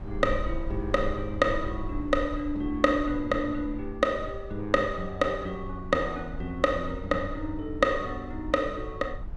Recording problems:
rumble; below 64 Hz, SNR 12 dB

